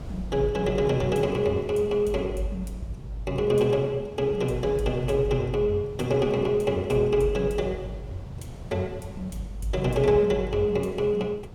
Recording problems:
wind on the microphone; below 240 Hz, SNR 18 dB

